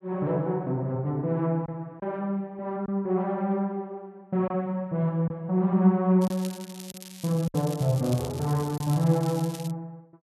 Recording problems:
lost packets; 2% of the sound replaced, filled with silence
crackling; from 6 to 9.5 s; loose cable, SNR 16 dB

